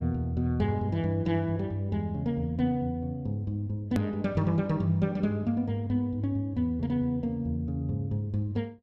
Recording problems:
edit click; at 4 s

